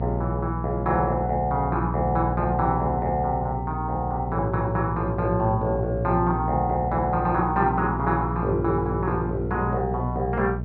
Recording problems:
hum; 60 Hz, harmonics up to 660 Hz, SNR 5 dB

